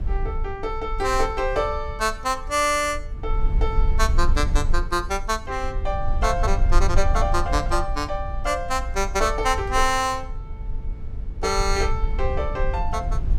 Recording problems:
rumble; below 52 Hz, strongest tone 20 Hz, SNR 3 dB

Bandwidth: 17 kHz